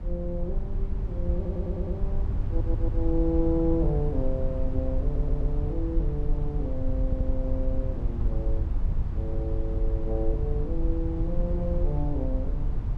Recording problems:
rumble; below 70 Hz, SNR -3 dB
stutter; 4 times, first at 1.5 s

